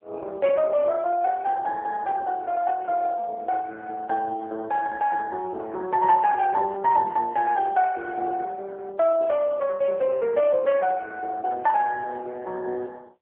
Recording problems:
telephone audio; 340 Hz to 3.4 kHz, AMR-NB

